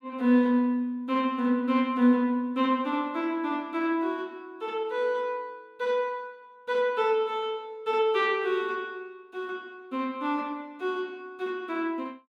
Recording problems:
none

